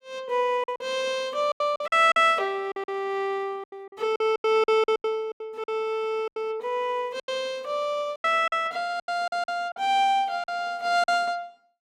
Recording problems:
packet loss; 13% of the sound replaced, filled with silence

